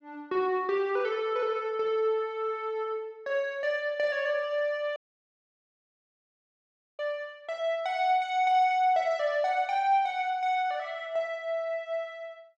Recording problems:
dropout; at 5 s for 2 s

